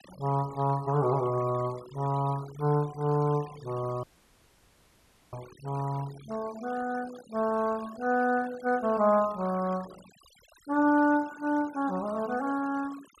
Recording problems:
noise reduction artefacts; signal-to-artefact ratio 20 dB
audio cutting out; at 4 s for 1.5 s

